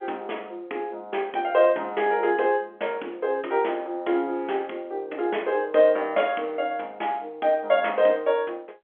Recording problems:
phone line; 280 Hz to 3.5 kHz, G.711

